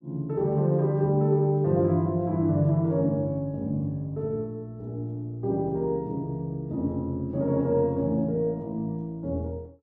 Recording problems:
none

